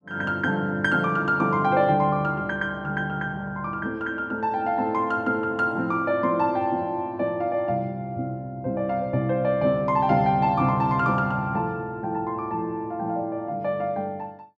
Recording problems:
none

